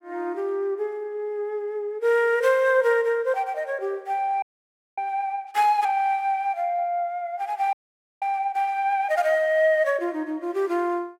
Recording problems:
frozen audio; at 4.5 s for 0.5 s and at 7.5 s

